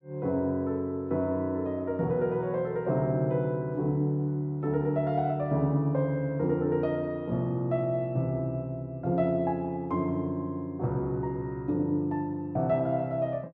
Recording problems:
none

